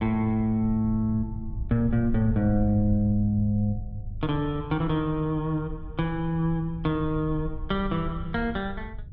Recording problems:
low-frequency rumble; below 82 Hz, SNR 11 dB

